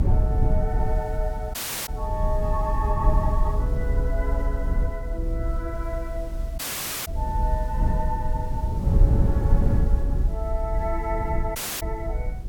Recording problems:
hiss; slope -3 dB per octave, SNR 21 dB
rumble; below 82 Hz, SNR -6 dB
dropout; at 1.5 s, at 6.5 s and at 12 s

